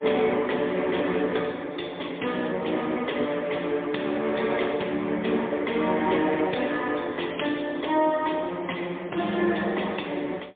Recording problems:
telephone audio; 240 Hz to 3.6 kHz, AMR-NB, then MP3

